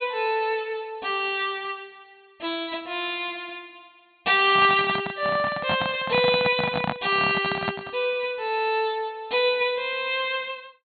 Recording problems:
treble missing; nothing above 4.3 kHz
microphone handling noise; from 4.5 to 8 s; peak +1 dB vs average level

